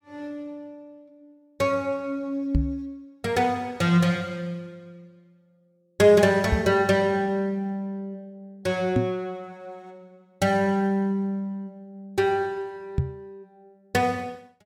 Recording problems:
microphone bump; 4 times, first at 2.5 s; peak +5 dB vs average level

